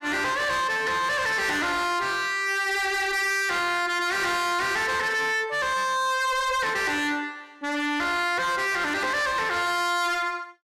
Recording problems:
distorted audio; hard clipping, signal-to-distortion ratio 7 dB

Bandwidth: 14.5 kHz